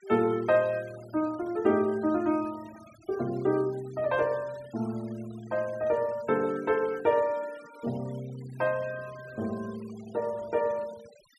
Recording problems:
noise reduction artefacts; signal-to-artefact ratio 22 dB

